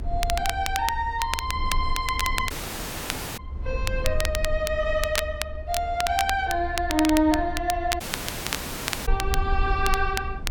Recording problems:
low-frequency rumble; below 70 Hz, SNR 7 dB
crackling; vinyl, SNR 6 dB
audio cutting out; at 2.5 s for 1 s and at 8 s for 1 s

